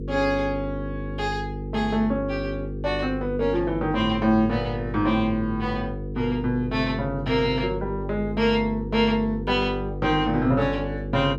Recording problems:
hum; 50 Hz, harmonics up to 500 Hz, SNR 8 dB

